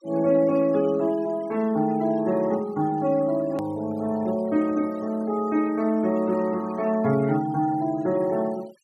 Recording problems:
noise reduction artefacts; signal-to-artefact ratio 21 dB
hard cut with a click; at 3.5 s

